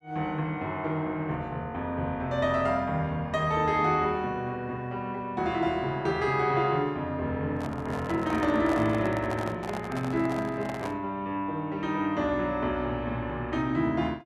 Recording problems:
microphone handling noise; from 7.5 to 11 s; peak -3 dB vs average level

